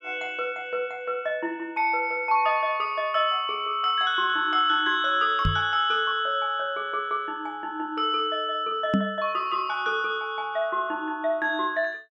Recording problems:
microphone bump; at 5.5 s and at 9 s; peak +5 dB vs average level

